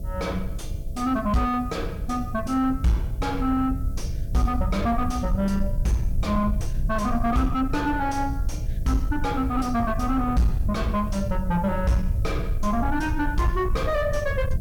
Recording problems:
distortion; soft clipping, signal-to-distortion ratio 7 dB
hum; 60 Hz, harmonics up to 660 Hz, SNR 20 dB
background hiss; SNR 28 dB
rumble; below 84 Hz, SNR 4 dB

